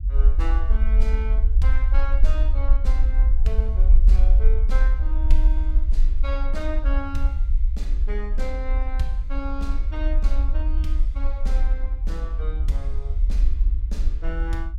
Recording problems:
rumble; below 48 Hz, SNR -11 dB

